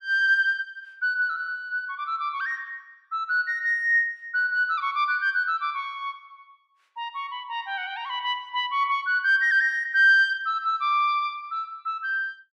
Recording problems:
none

